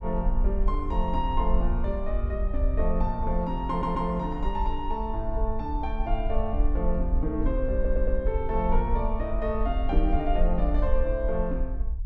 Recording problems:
rumble; below 50 Hz, SNR 0 dB
audio stuttering; at 3.5 s and at 7.5 s

